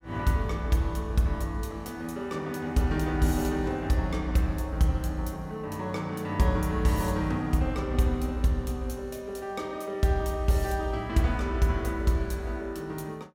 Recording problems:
none

